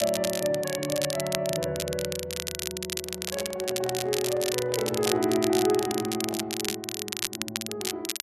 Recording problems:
crackling; vinyl, SNR 3 dB
handling noise; from 3 to 6.5 s; peak -8 dB vs average level

